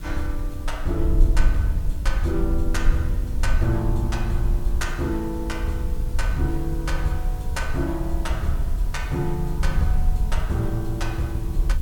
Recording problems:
hiss; slope -1 dB per octave, SNR 19 dB
rumble; below 58 Hz, SNR -2 dB

